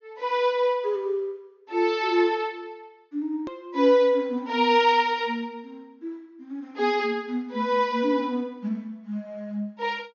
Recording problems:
low-pass filter; nothing above 6.7 kHz
hard cut with a click; at 3.5 s

